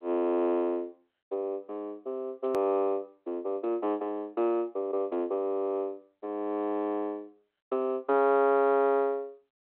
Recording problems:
phone line; 280 Hz to 3.9 kHz, G.726
edit click; at 2.5 s

